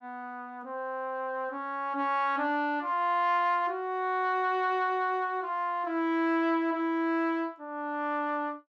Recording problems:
none

